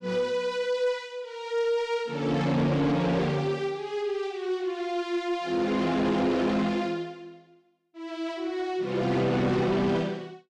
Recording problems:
distorted audio; soft clipping, signal-to-distortion ratio 11 dB

